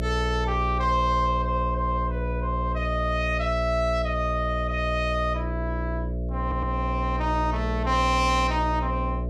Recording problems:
hum; 60 Hz, harmonics up to 660 Hz, SNR 3 dB
stutter; at 6.5 s

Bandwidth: 15 kHz